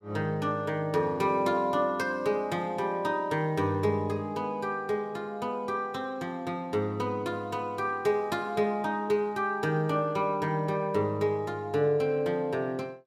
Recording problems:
none

